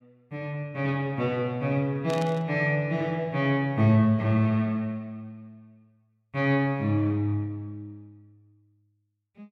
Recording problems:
static burst; at 2 s; peak -10 dB vs average level

